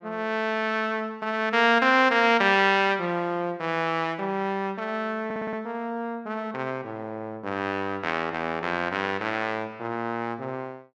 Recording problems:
audio stuttering; at 5.5 s

